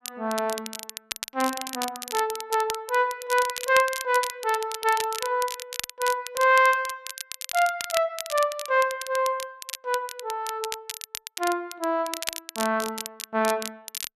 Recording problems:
crackling; vinyl, SNR 9 dB

